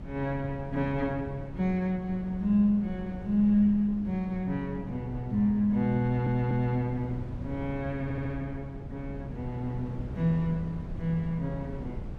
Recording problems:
wind on the microphone; below 200 Hz, SNR 12 dB
audio stuttering; at 6 s and at 8 s

